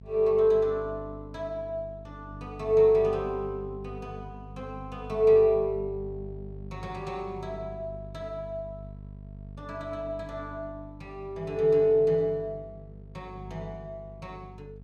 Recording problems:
hum; 50 Hz, harmonics up to 500 Hz, SNR 17 dB

